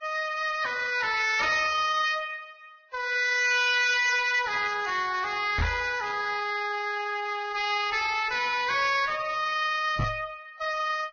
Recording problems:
lossy compression; Vorbis, log-spectral distance 4 dB, nothing above 6 kHz
distorted audio; hard clipping, uneven, signal-to-distortion ratio 6 dB
crackling; from 3.5 to 6 s; loose cable, SNR 25 dB
microphone bump; at 5.5 s and at 10 s; peak +1 dB vs average level

